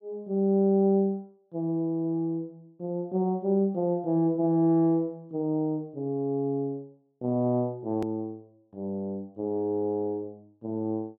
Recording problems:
hard cut with a click; at 8 s

